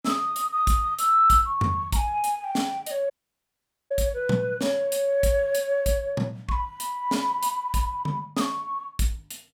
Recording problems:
dropout; at 3 s for 1 s

